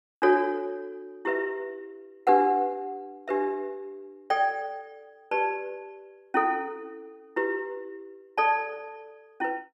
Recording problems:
none

